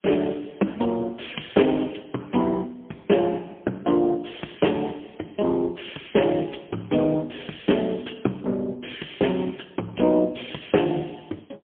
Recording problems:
telephone audio; 190 Hz to 3.3 kHz, AMR-NB, then MP3

